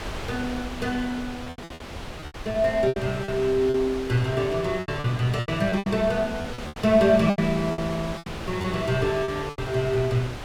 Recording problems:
wind on the microphone; below 1.7 kHz, SNR 11 dB
lost packets; 12% of the sound replaced, filled with repeated pitch periods

